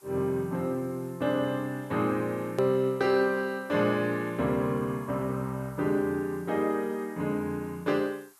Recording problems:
background hiss; SNR 27 dB
click at an edit; at 2.5 s

